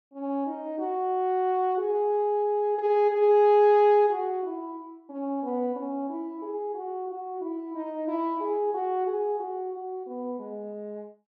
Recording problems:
none

